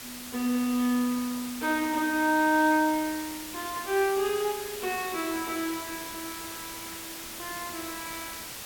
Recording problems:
background hiss; slope -1 dB per octave, SNR 9 dB

